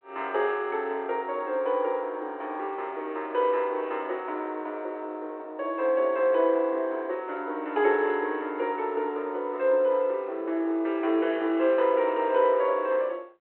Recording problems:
telephone audio; 280 Hz to 3.4 kHz, G.726

